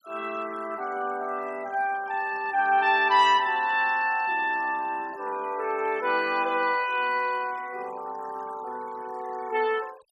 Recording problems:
noise reduction artefacts; signal-to-artefact ratio 22 dB

